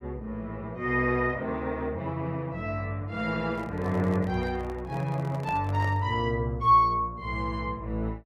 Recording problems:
handling noise; from 3.5 to 6 s; peak -7 dB vs average level

